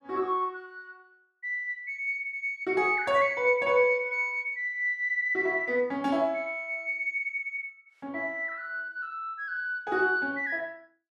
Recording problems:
none

